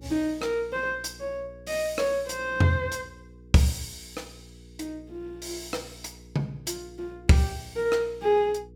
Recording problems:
electrical hum; 60 Hz, harmonics up to 480 Hz, SNR 22 dB

